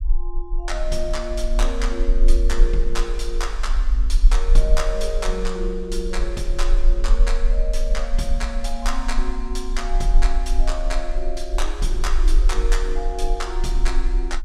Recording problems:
rumble; below 38 Hz, strongest tone 24 Hz, SNR -4 dB

